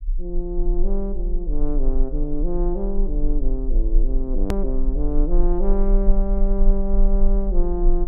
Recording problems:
rumble; below 34 Hz, strongest tone 22 Hz, SNR -3 dB
hard cut with a click; at 4.5 s

